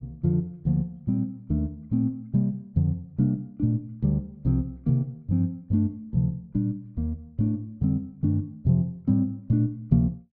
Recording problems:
none

